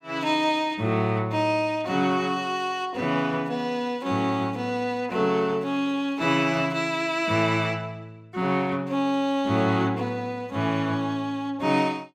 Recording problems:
none

